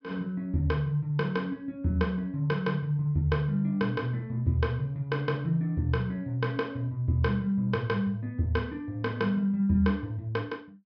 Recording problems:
low-pass filter; nothing above 5.5 kHz

